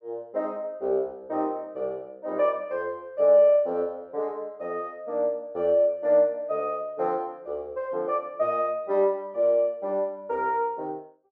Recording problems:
none

